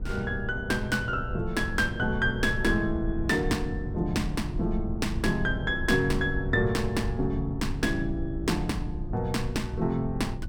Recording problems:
electrical hum; 50 Hz, harmonics up to 800 Hz, SNR 19 dB
rumble; below 100 Hz, SNR 7 dB

